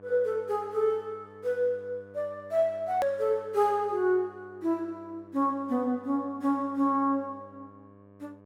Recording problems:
hum; 50 Hz, harmonics up to 1.7 kHz, SNR 24 dB
edit click; at 3 s

